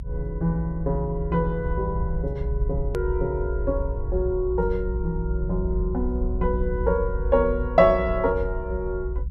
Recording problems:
low-frequency rumble; below 62 Hz, SNR 4 dB
hard cut with a click; at 3 s

